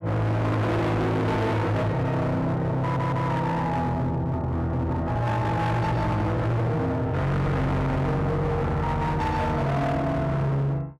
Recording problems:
distortion; hard clipping, signal-to-distortion ratio 6 dB
stutter; at 3 s

